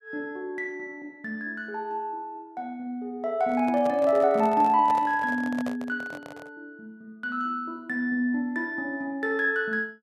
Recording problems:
handling noise; from 3.5 to 6.5 s; peak -5 dB vs average level

